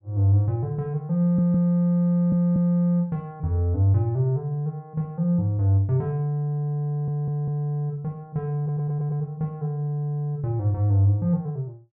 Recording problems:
stutter; 4 times, first at 1 s

